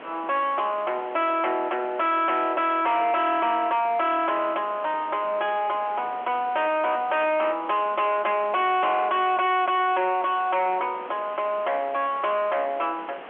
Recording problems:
phone line; 220 Hz to 3.3 kHz, G.711
distorted audio; soft clipping, signal-to-distortion ratio 6 dB
hiss; SNR 18 dB

